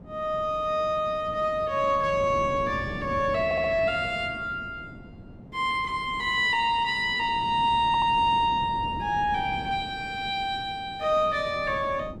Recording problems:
wind noise; below 320 Hz, SNR 15 dB
stutter; at 3.5 s and at 8 s

